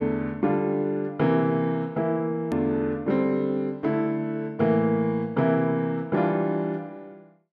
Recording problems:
edit click; at 2.5 s

